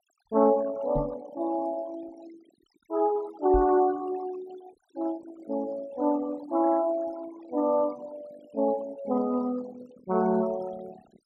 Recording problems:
noise reduction artefacts; signal-to-artefact ratio 20 dB
knock on the microphone; at 1 s and at 3.5 s; peak -1 dB vs average level

